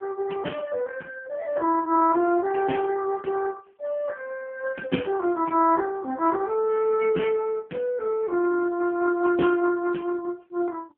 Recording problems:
telephone audio; 220 Hz to 2.8 kHz, AMR-NB

